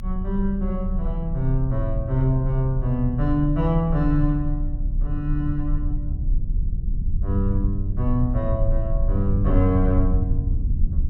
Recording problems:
low-frequency rumble; below 64 Hz, strongest tone 32 Hz, SNR 2 dB

